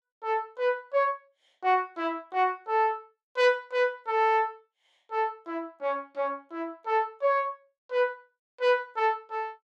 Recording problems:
none

